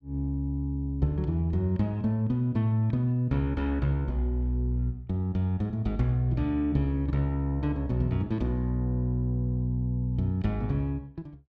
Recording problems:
none

